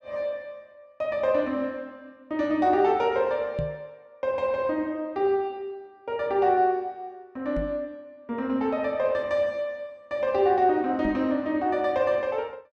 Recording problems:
knock on the microphone; at 3.5 s, at 7.5 s and at 11 s; peak -2 dB vs average level

